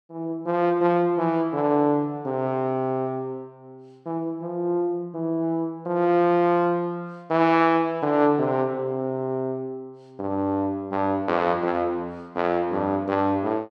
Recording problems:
none

